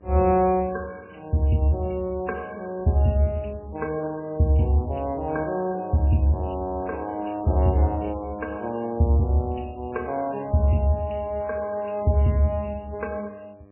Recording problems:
lossy compression; MP3, log-spectral distance 5 dB, nothing above 2.7 kHz
mains hum; 50 Hz, harmonics up to 1.3 kHz, SNR 27 dB

